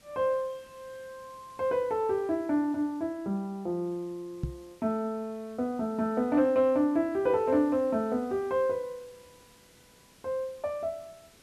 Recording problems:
hiss; SNR 28 dB
microphone bump; at 4.5 s; peak +1 dB vs average level

